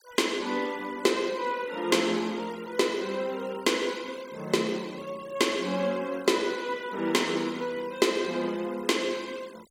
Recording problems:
denoising artefacts; signal-to-artefact ratio 20 dB

